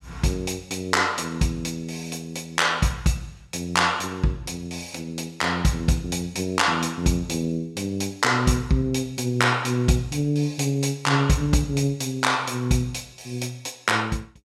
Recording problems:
none

